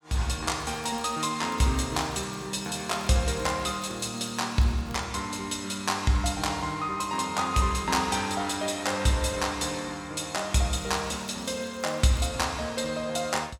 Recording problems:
crackle; from 0.5 to 5 s and from 11 to 12 s; loose cable, SNR 27 dB

